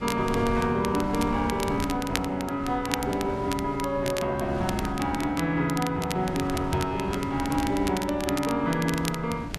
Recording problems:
wind noise; below 330 Hz, SNR 11 dB
crackle; vinyl, SNR 11 dB

